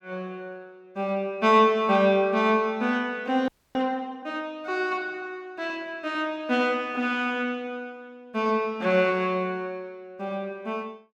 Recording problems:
frozen audio; at 3.5 s

